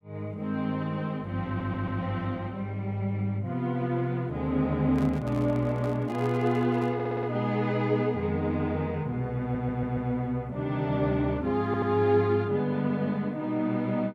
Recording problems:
audio stuttering; 4 times, first at 1.5 s
handling noise; from 5 to 7 s; peak -10 dB vs average level

